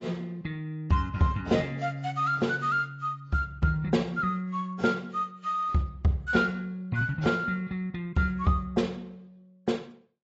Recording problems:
lossy codec; AAC, log-spectral distance 2 dB

